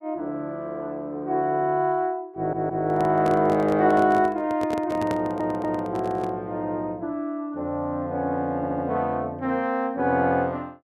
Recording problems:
stutter; at 2.5 s, at 5 s and at 8.5 s
handling noise; from 2.5 to 6.5 s; peak -2 dB vs average level

